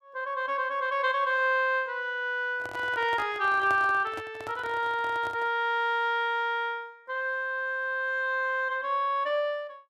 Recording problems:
microphone handling noise; from 2.5 to 5.5 s; peak -6 dB vs average level

